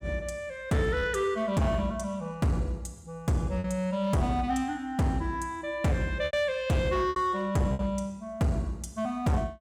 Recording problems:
distortion; hard clipping, signal-to-distortion ratio 11 dB
lost packets; 3% of the sound replaced, filled with repeated pitch periods

